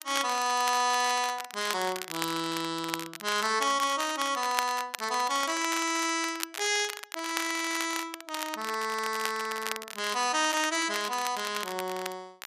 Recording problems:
codec artefacts; MP3, log-spectral distance 3 dB, nothing above 11 kHz
crackle; vinyl, SNR 9 dB

